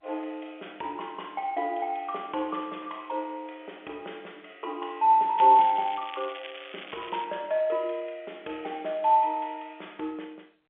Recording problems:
telephone audio; 320 Hz to 3.5 kHz, G.711
crackling; from 5.5 to 7 s; loose cable, SNR 16 dB

